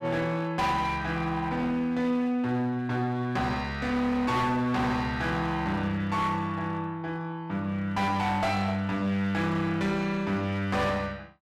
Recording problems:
distortion; hard clipping, uneven, signal-to-distortion ratio 10 dB

